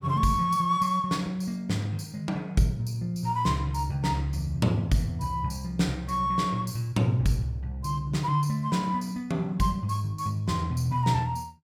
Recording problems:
none

